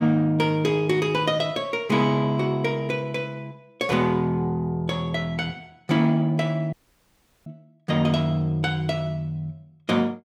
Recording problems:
audio cutting out; at 6.5 s for 0.5 s

